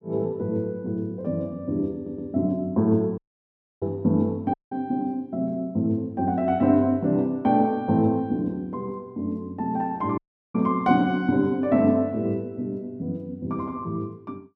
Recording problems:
audio stuttering; at 2 s
audio cutting out; at 3 s for 0.5 s, at 4.5 s and at 10 s

